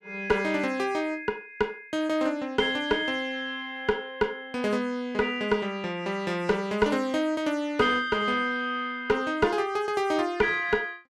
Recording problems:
distortion; soft clipping, signal-to-distortion ratio 11 dB

